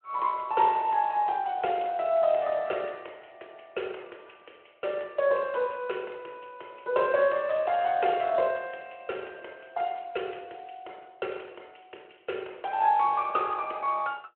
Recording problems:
phone line; 320 Hz to 3.2 kHz, Speex

